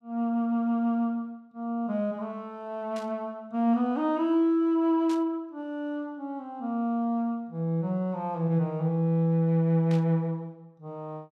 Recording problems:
burst of static; at 3 s, at 5 s and at 10 s; peak -11 dB vs average level

